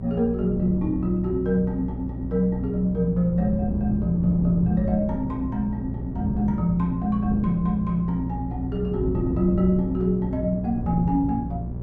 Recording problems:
electrical hum; 60 Hz, harmonics up to 600 Hz, SNR 9 dB
wind on the microphone; below 230 Hz, SNR 8 dB

